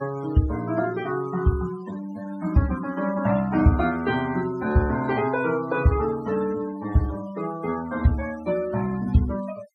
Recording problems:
denoising artefacts; signal-to-artefact ratio 17 dB

